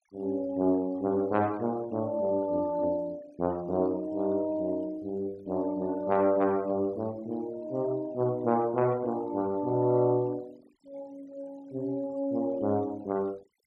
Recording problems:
denoising artefacts; signal-to-artefact ratio 26 dB

